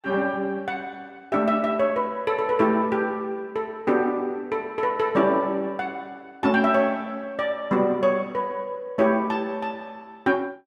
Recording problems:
none

